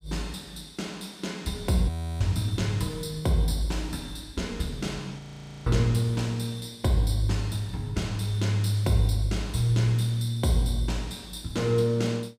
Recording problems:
audio freezing; at 2 s and at 5 s

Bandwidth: 15.5 kHz